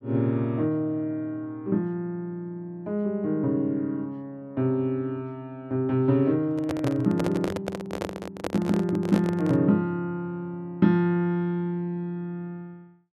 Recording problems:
handling noise; from 6.5 to 9.5 s; peak 0 dB vs average level

